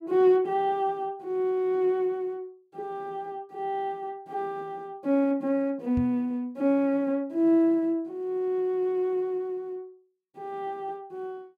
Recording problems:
microphone bump; at 6 s; peak -1 dB vs average level

